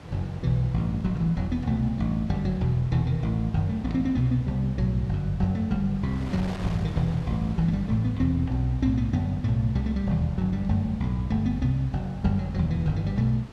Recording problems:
wind on the microphone; below 990 Hz, SNR 18 dB

